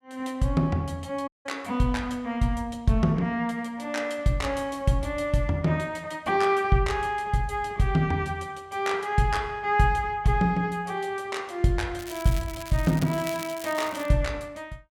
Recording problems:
dropout; at 1.5 s
crackling; from 12 to 14 s; loose cable, SNR 14 dB

